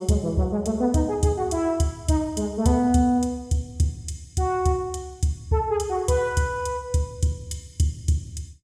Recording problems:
none

